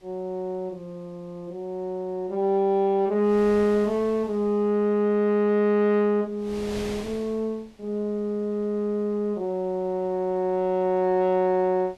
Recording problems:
wind noise; below 3.2 kHz, SNR 21 dB

